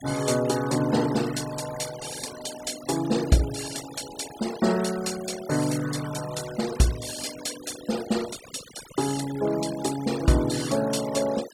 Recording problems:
denoising artefacts; signal-to-artefact ratio 13 dB

